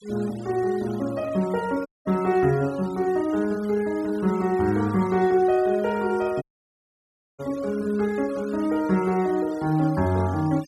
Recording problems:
noise reduction artefacts; signal-to-artefact ratio 22 dB
audio cutting out; at 2 s and at 6.5 s for 1 s

